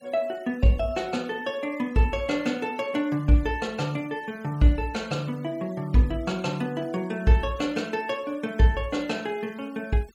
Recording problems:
denoising artefacts; signal-to-artefact ratio 25 dB

